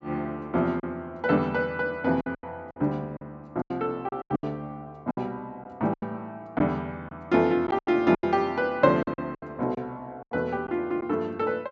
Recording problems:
treble missing; nothing above 8 kHz
lost packets; 10% of the sound replaced, filled with silence

